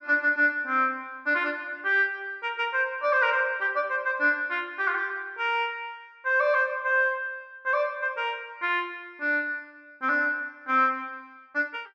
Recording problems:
none

